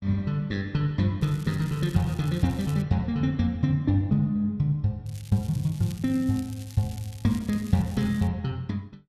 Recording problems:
crackle; from 1 to 3 s and from 5 to 8.5 s; loose cable, SNR 21 dB

